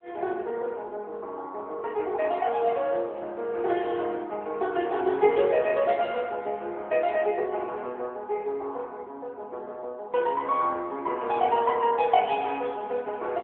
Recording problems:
phone line; 300 Hz to 3.4 kHz, AMR-NB

